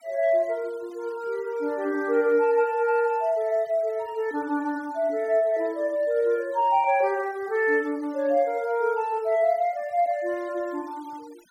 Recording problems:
noise reduction artefacts; signal-to-artefact ratio 28 dB

